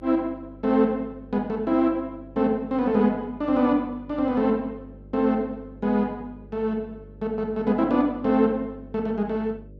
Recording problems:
mains hum; 50 Hz, harmonics up to 600 Hz, SNR 21 dB

